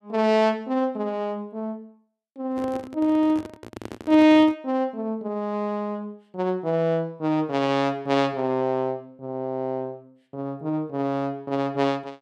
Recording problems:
handling noise; from 2.5 to 4.5 s; peak -7 dB vs average level

